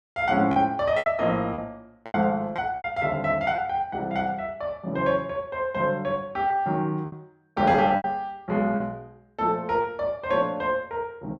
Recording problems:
packet loss; 6% of the sound replaced, filled with repeated pitch periods

